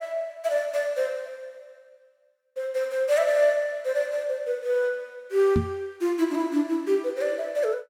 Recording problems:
microphone bump; at 5.5 s; peak +5 dB vs average level

